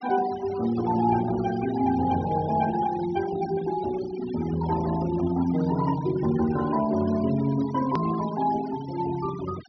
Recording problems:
treble cut off; nothing above 6 kHz
noise reduction artefacts; signal-to-artefact ratio 15 dB
hard cut with a click; at 8 s

